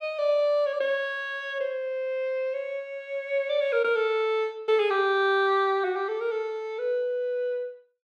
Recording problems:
none

